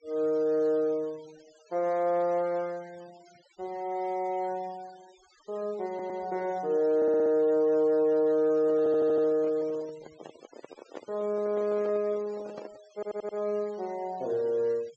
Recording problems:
treble cut off; nothing above 8 kHz
noise reduction artefacts; signal-to-artefact ratio 27 dB
audio stuttering; 4 times, first at 6 s
handling noise; from 8.5 to 13 s; peak -9 dB vs average level

